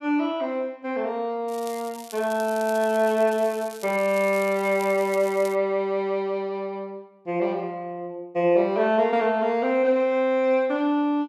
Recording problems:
crackle; from 1.5 to 5.5 s; loose cable, SNR 19 dB

